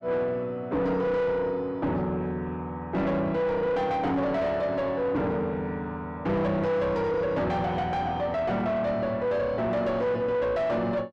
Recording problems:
distortion; soft clipping, signal-to-distortion ratio 7 dB

